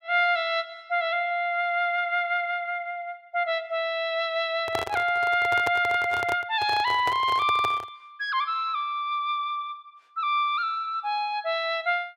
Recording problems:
microphone handling noise; from 4.5 to 8 s; peak 0 dB vs average level

